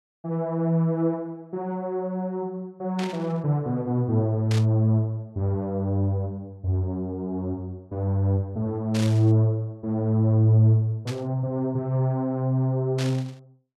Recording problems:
burst of static; 5 times, first at 3 s; peak -5 dB vs average level

